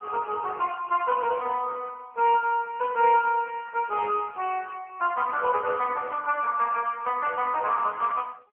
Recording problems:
telephone audio; 320 Hz to 2.9 kHz, AMR-NB

